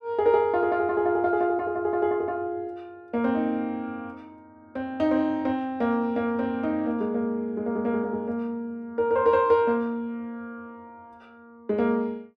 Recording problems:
none

